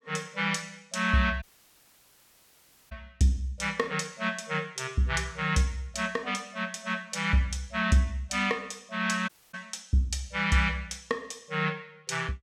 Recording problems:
audio cutting out; at 1.5 s for 1.5 s and at 9.5 s

